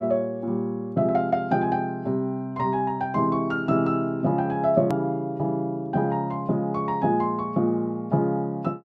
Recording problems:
hard cut with a click; at 5 s

